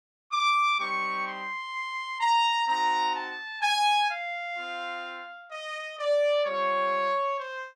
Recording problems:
none

